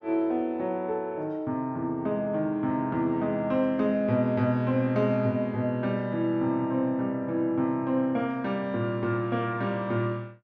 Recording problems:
none

